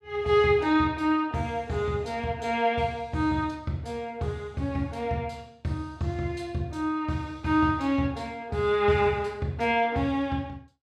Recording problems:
none

